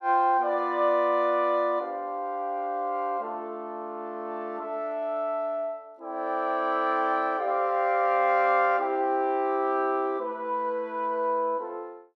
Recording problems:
none

